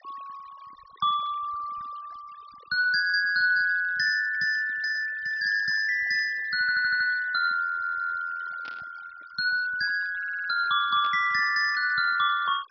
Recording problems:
treble missing; nothing above 5.5 kHz
noise reduction artefacts; signal-to-artefact ratio 21 dB
audio stuttering; at 6.5 s, at 7.5 s and at 10 s
static burst; at 8.5 s and at 11 s; peak -16 dB vs average level

